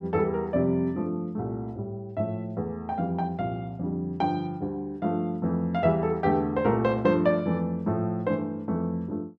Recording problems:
none

